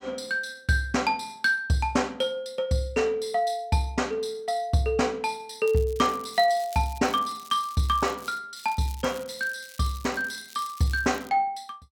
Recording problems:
crackle; from 5.5 to 8.5 s and from 8.5 to 11 s; loose cable, SNR 20 dB

